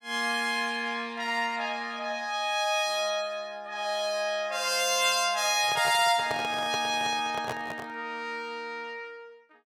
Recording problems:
handling noise; from 5.5 to 8 s; peak -3 dB vs average level

